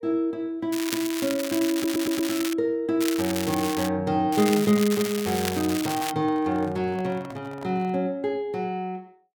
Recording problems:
crackling; from 0.5 to 2.5 s, at 3 s and from 4.5 to 6 s; loose cable, SNR 7 dB
audio stuttering; at 1.5 s
microphone handling noise; from 4.5 to 8 s; peak -11 dB vs average level

